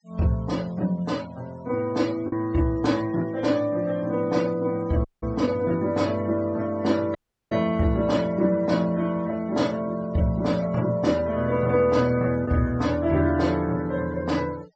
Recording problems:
treble cut off; nothing above 8 kHz
noise reduction artefacts; signal-to-artefact ratio 24 dB
packet loss; 0.6% of the sound replaced, filled with the last packet
dropout; at 5 s and at 7 s

